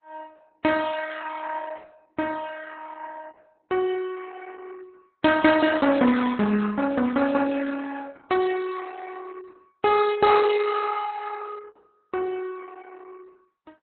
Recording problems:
lossy codec; MP3, then Opus, log-spectral distance 5 dB, nothing above 4 kHz

